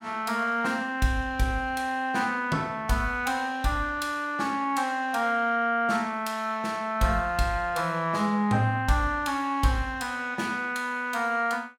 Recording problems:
none

